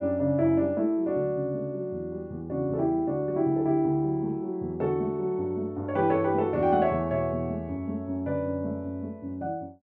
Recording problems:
none

